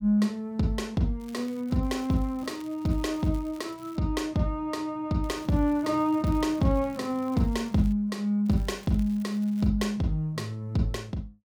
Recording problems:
crackle; from 1 to 4 s, from 5 to 8 s and from 8.5 to 9.5 s; loose cable, SNR 26 dB

